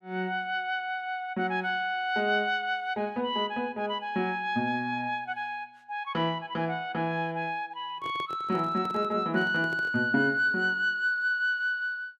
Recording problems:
microphone handling noise; from 8 to 10 s; peak -9 dB vs average level

